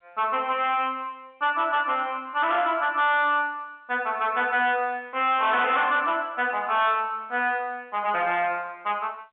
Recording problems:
telephone audio; 300 Hz to 3.7 kHz, G.711
distortion; hard clipping, signal-to-distortion ratio 11 dB

